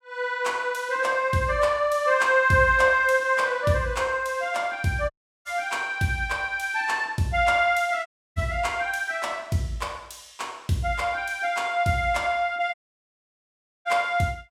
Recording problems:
dropout; at 5 s, at 8 s and at 13 s for 1 s

